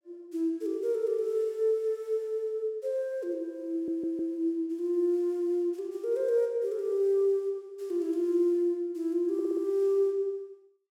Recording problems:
audio stuttering; at 3.5 s and at 9.5 s

